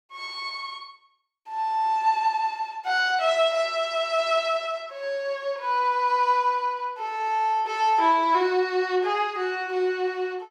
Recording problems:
none

